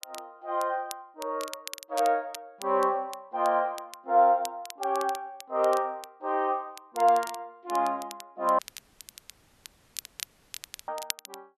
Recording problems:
crackling; vinyl, SNR 15 dB
dropout; at 8.5 s for 2.5 s

